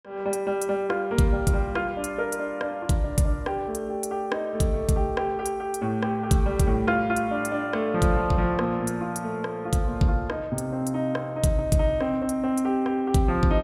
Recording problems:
none

